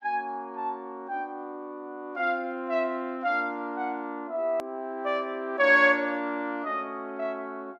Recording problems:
click at an edit; at 4.5 s

